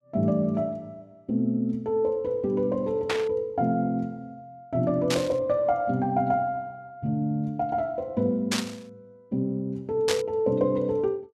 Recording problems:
burst of static; 4 times, first at 3 s; peak +4 dB vs average level

